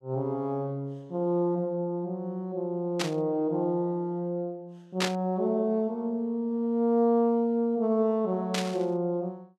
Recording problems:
static burst; at 3 s, at 5 s and at 8.5 s; peak +4 dB vs average level

